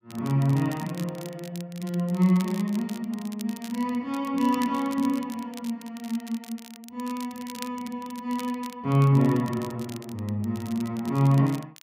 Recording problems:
crackle; vinyl, SNR 19 dB

